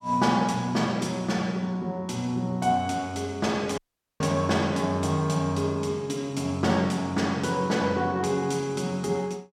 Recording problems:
audio cutting out; at 4 s

